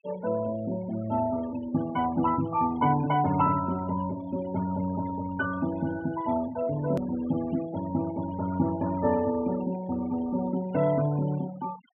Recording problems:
treble cut off; nothing above 3.5 kHz
noise reduction artefacts; signal-to-artefact ratio 16 dB
hard cut with a click; at 7 s

